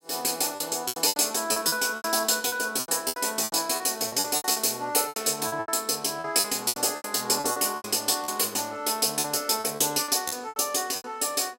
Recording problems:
packet loss; 16% of the sound replaced, filled with repeated pitch periods

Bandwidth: 16 kHz